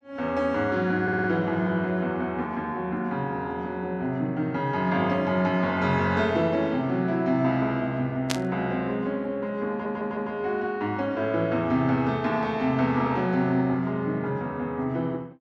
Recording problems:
audio stuttering; at 1 s and at 9.5 s
burst of static; at 8.5 s; peak +3 dB vs average level

